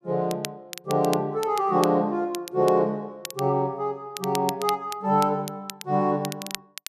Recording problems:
crackling; vinyl, SNR 13 dB

